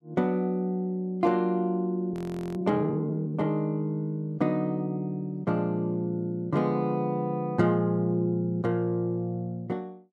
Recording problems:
frozen audio; at 2 s

